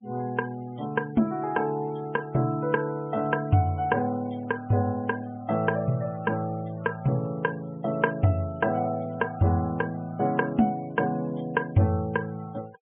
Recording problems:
treble cut off; nothing above 3.3 kHz
denoising artefacts; signal-to-artefact ratio 26 dB

